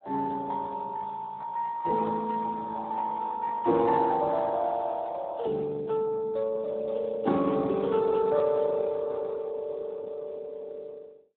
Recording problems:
phone line; 220 Hz to 3.9 kHz, Speex

